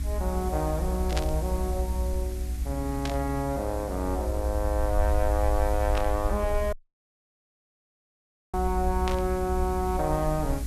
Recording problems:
electrical hum; 50 Hz, harmonics up to 300 Hz, SNR 14 dB
hiss; slope -1 dB per octave, SNR 16 dB
rumble; below 62 Hz, strongest tone 60 Hz, SNR 2 dB
static burst; 4 times, first at 1 s; peak +1 dB vs average level
dropout; at 6.5 s for 2 s

